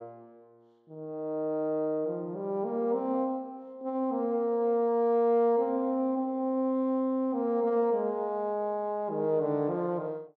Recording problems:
none

